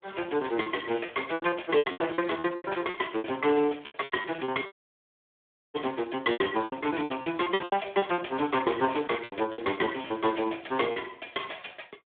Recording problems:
telephone audio; 240 Hz to 3.4 kHz, Speex
lost packets; 15% of the sound replaced, filled with repeated pitch periods
audio cutting out; at 4.5 s for 1 s

